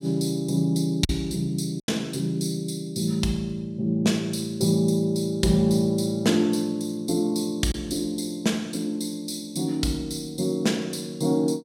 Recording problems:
lost packets; 1.2% of the sound replaced, filled with silence

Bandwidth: 16 kHz